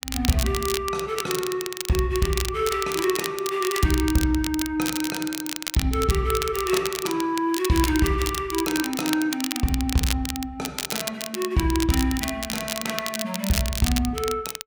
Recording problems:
crackling; vinyl, SNR 5 dB

